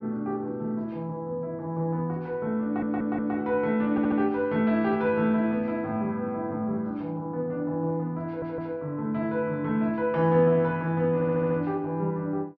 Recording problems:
treble missing; nothing above 6.1 kHz
stutter; 4 times, first at 2.5 s

